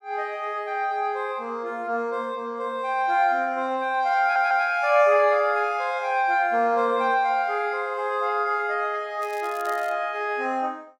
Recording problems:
audio stuttering; at 4 s
crackle; at 9 s; loose cable, SNR 23 dB

